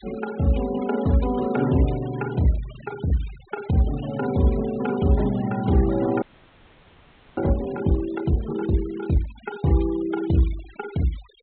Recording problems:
low-pass filter; nothing above 4 kHz
noise reduction artefacts; signal-to-artefact ratio 19 dB
audio freezing; at 6 s for 1 s

